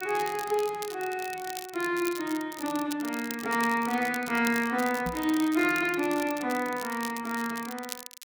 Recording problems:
crackle; vinyl, SNR 13 dB
microphone bump; at 5 s; peak -3 dB vs average level

